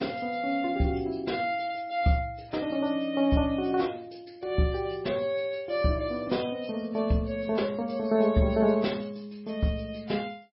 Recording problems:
lossy codec; MP3, log-spectral distance 3 dB, nothing above 5.3 kHz

